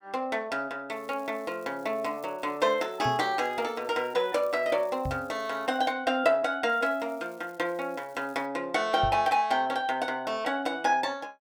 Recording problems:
crackling; from 1 to 6 s and from 6.5 to 8.5 s; loose cable, SNR 29 dB
microphone thump; at 3 s, at 5 s and at 9 s; peak -1 dB vs average level

